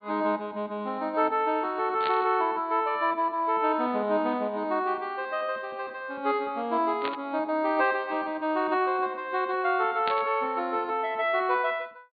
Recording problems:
treble missing; nothing above 4.5 kHz
burst of static; at 2 s, at 7 s and at 10 s; peak -2 dB vs average level

